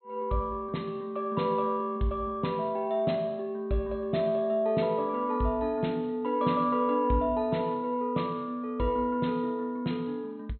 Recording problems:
treble missing; nothing above 4.2 kHz

